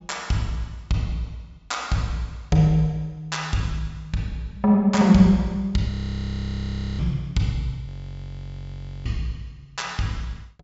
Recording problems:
treble cut off; nothing above 8 kHz
audio freezing; at 6 s for 1 s and at 8 s for 1 s

